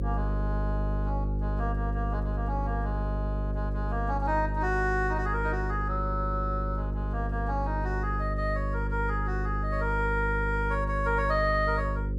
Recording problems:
hum; 50 Hz, harmonics up to 550 Hz, SNR 0 dB

